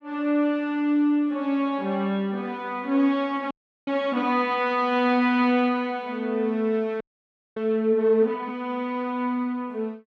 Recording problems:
frozen audio; at 3.5 s and at 7 s for 0.5 s

